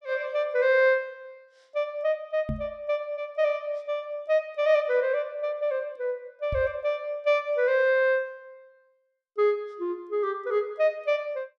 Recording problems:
microphone thump; at 2.5 s and at 6.5 s; peak -1 dB vs average level

